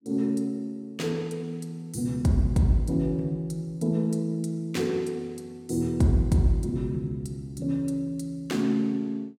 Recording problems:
none

